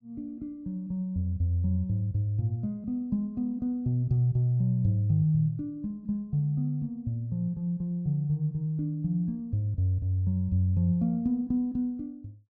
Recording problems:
none

